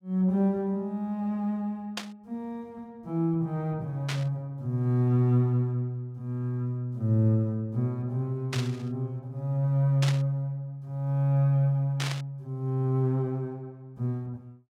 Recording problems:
static burst; 5 times, first at 2 s; peak 0 dB vs average level

